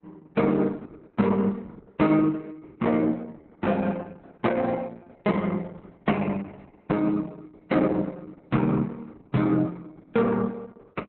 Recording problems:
lossy codec; Opus, log-spectral distance 3 dB, nothing above 4 kHz

